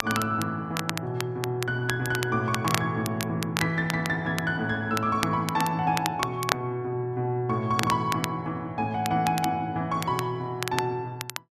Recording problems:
crackle; vinyl, SNR 7 dB

